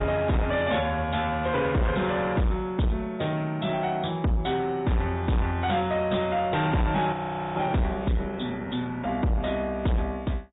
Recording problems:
low-pass filter; nothing above 3.8 kHz
lossy compression; MP3, log-spectral distance 3 dB
distortion; soft clipping, signal-to-distortion ratio 7 dB
frozen audio; at 7 s

